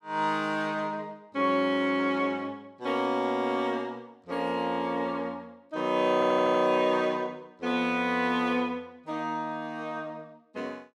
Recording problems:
audio stuttering; at 6 s

